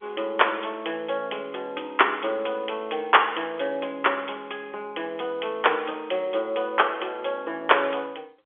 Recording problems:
telephone audio; 240 Hz to 3.4 kHz, G.711

